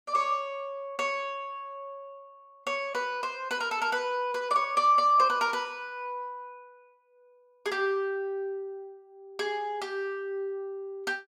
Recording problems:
none

